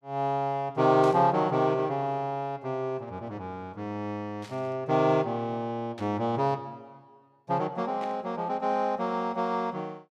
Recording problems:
static burst; 4 times, first at 1 s; peak -12 dB vs average level

